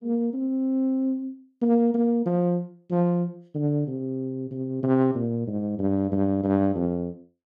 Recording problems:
none

